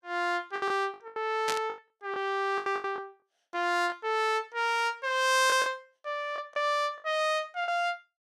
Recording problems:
lost packets; 9% of the sound replaced, filled with the last packet
burst of static; at 1.5 s; peak +1 dB vs average level

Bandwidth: 15 kHz